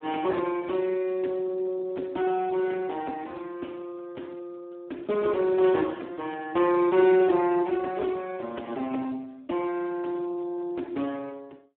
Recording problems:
phone line; 240 Hz to 2.3 kHz, Speex

